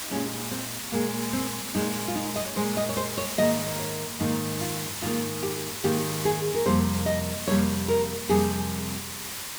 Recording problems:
hiss; slope 0 dB per octave, SNR 4 dB

